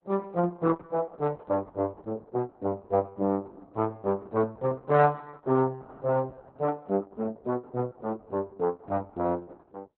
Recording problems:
lossy compression; Opus, log-spectral distance 2 dB, nothing above 4 kHz

